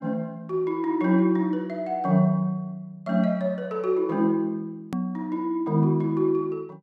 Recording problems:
edit click; at 5 s

